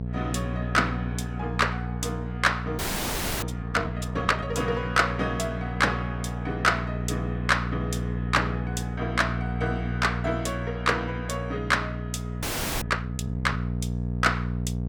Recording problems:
mains hum; 60 Hz, harmonics up to 660 Hz, SNR 4 dB
audio freezing; at 3 s for 0.5 s and at 12 s

